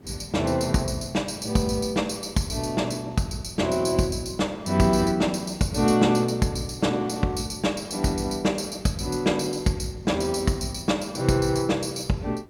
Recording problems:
background hiss; slope -9 dB per octave, SNR 25 dB

